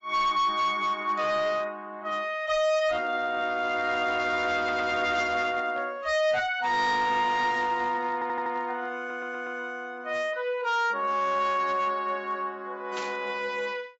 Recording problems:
lossy codec; AAC, log-spectral distance 2 dB, nothing above 7.3 kHz
distorted audio; hard clipping, signal-to-distortion ratio 10 dB
audio stuttering; at 4.5 s, at 8 s and at 9 s
burst of static; at 13 s; peak -6 dB vs average level

